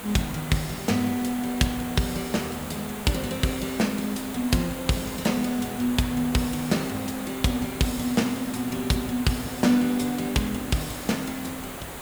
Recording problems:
hiss; SNR 10 dB

